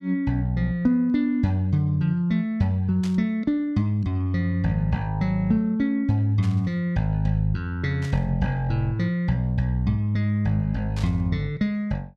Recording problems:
static burst; 4 times, first at 3 s; peak -11 dB vs average level

